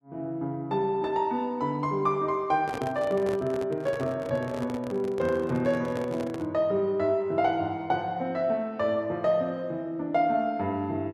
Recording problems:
microphone handling noise; from 2.5 to 6.5 s; peak -3 dB vs average level

